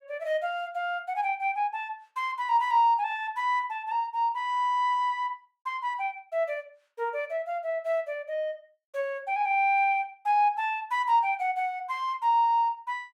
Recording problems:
none

